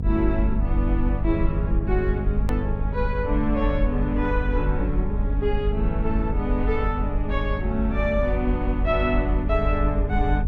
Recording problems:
mains hum; 50 Hz, harmonics up to 500 Hz, SNR 5 dB
low-frequency rumble; below 50 Hz, strongest tone 44 Hz, SNR 1 dB
hard cut with a click; at 2.5 s

